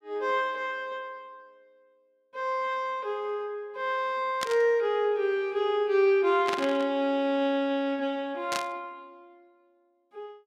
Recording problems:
burst of static; at 4.5 s, at 6.5 s and at 8.5 s; peak 0 dB vs average level

